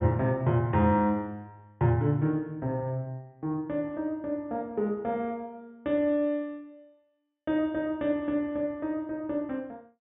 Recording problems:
treble cut off; nothing above 3.7 kHz

